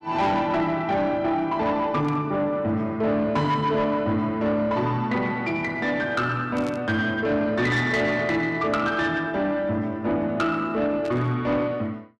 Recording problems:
distortion; soft clipping, signal-to-distortion ratio 12 dB
static burst; at 2 s, at 6.5 s and at 11 s; peak -13 dB vs average level

